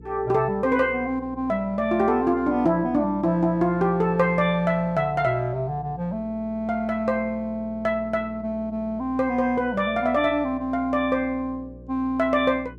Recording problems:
hum; 60 Hz, harmonics up to 480 Hz, SNR 20 dB

